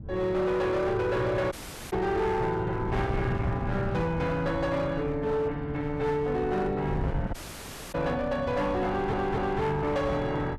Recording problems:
distortion; hard clipping, signal-to-distortion ratio 11 dB
wind noise; below 180 Hz, SNR 9 dB
dropout; at 1.5 s and at 7.5 s for 0.5 s
stutter; at 9 s

